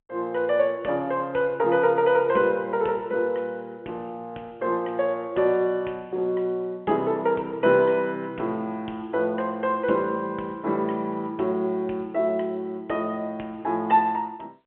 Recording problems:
telephone audio; 240 Hz to 3.5 kHz, G.711

